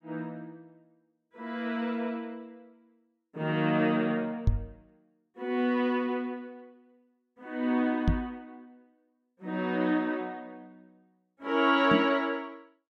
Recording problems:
knock on the microphone; at 4.5 s, at 8 s and at 12 s; peak +7 dB vs average level

